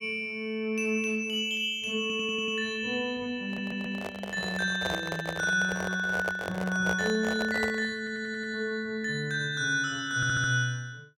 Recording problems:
stutter; 4 times, first at 2 s
handling noise; from 3.5 to 8 s; peak +1 dB vs average level

